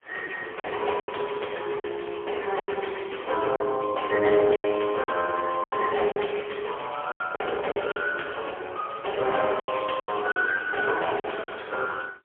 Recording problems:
phone line; 320 Hz to 3.3 kHz, AMR-NB, then MP3
packet loss; 8% of the sound replaced, filled with silence

